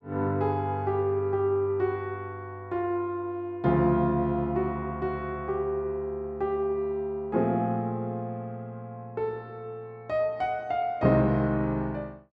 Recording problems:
none

